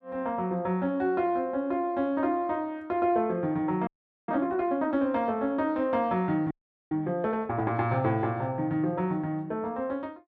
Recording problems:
audio freezing; at 4 s and at 6.5 s

